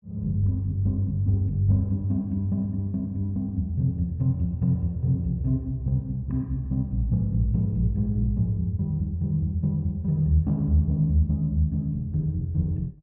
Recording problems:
low-pass filter; nothing above 4 kHz

